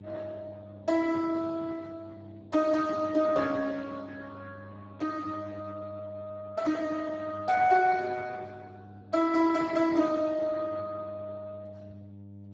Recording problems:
lossy codec; Speex, log-spectral distance 3 dB, nothing above 7.3 kHz
hum; 50 Hz, harmonics up to 600 Hz, SNR 19 dB

